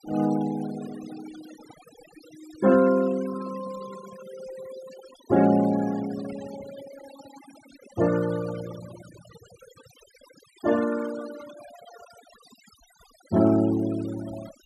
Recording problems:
noise reduction artefacts; signal-to-artefact ratio 17 dB

